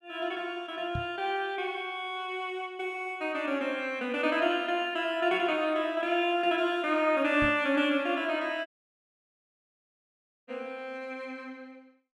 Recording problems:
microphone bump; at 1 s and at 7.5 s; peak -2 dB vs average level
dropout; at 8.5 s for 2 s

